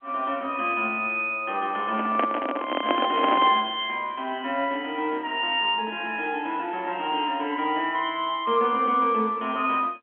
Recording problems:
telephone audio; 240 Hz to 3.3 kHz, G.711
handling noise; from 2 to 3.5 s; peak +4 dB vs average level

